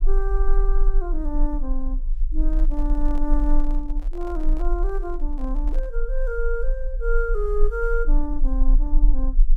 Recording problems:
rumble; below 34 Hz, strongest tone 22 Hz, SNR -4 dB
microphone handling noise; from 2.5 to 6 s; peak -11 dB vs average level

